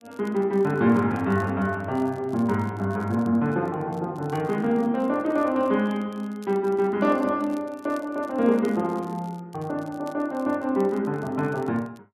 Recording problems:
crackle; vinyl, SNR 30 dB

